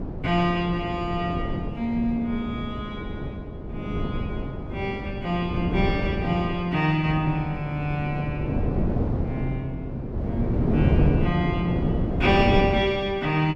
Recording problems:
wind noise; below 310 Hz, SNR 2 dB

